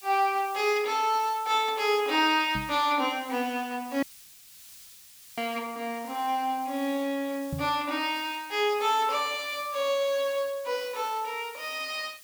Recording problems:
hiss; SNR 19 dB
knock on the microphone; at 2.5 s and at 7.5 s; peak -2 dB vs average level
audio cutting out; at 4 s for 1.5 s

